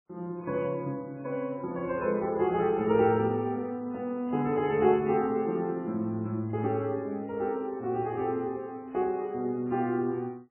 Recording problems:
lossy compression; MP3, log-spectral distance 2 dB, nothing above 2.5 kHz

